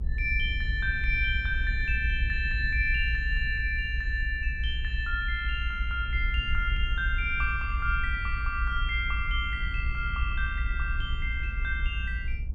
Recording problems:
rumble; below 60 Hz, SNR 2 dB

